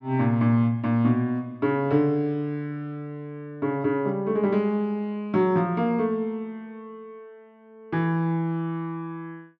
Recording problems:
none

